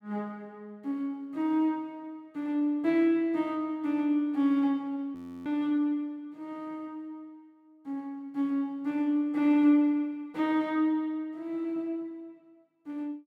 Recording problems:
frozen audio; at 5 s

